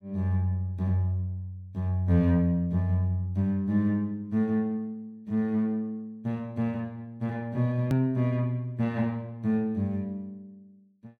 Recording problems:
hard cut with a click; at 8 s

